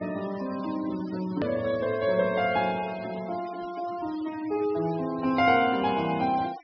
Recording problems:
low-pass filter; nothing above 5.5 kHz
noise reduction artefacts; signal-to-artefact ratio 18 dB
hard cut with a click; at 1.5 s

